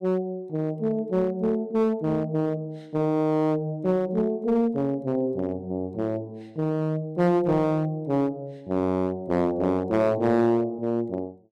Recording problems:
distortion; hard clipping, uneven, signal-to-distortion ratio 10 dB

